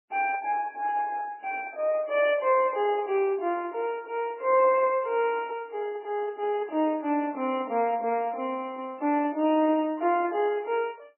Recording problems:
codec artefacts; MP3, log-spectral distance 2 dB, nothing above 2.4 kHz

